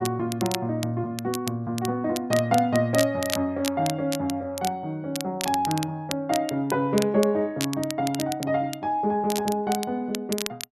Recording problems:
crackling; vinyl, SNR 9 dB

